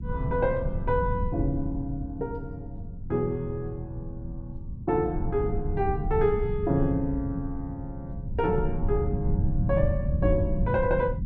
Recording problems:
rumble; below 150 Hz, SNR 3 dB

